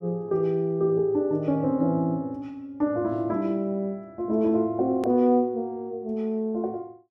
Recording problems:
hard cut with a click; at 5 s

